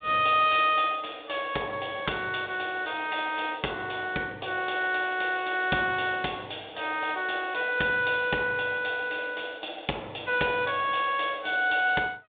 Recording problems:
phone line; 190 Hz to 3.7 kHz, G.726

